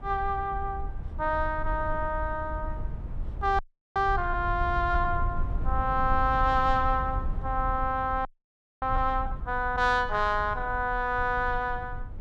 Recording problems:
rumble; below 70 Hz, SNR 8 dB
audio freezing; at 3.5 s and at 8.5 s for 0.5 s

